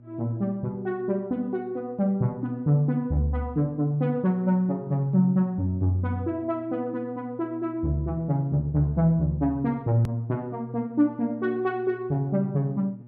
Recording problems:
electrical hum; 60 Hz, harmonics up to 600 Hz, SNR 22 dB
click at an edit; at 10 s

